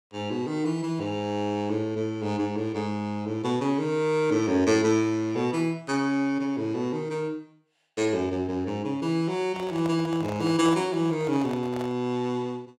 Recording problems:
handling noise; from 9.5 to 12 s; peak -7 dB vs average level

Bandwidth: 16 kHz